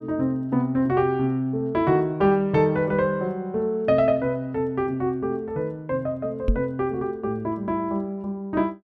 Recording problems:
microphone bump; at 6.5 s; peak +5 dB vs average level

